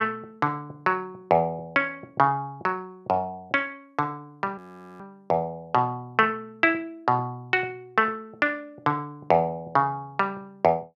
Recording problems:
audio freezing; at 4.5 s

